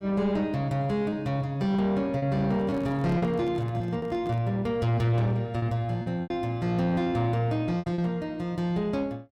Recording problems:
distortion; soft clipping, signal-to-distortion ratio 11 dB
lost packets; 5% of the sound replaced, filled with repeated pitch periods
microphone handling noise; from 2.5 to 4.5 s; peak -9 dB vs average level

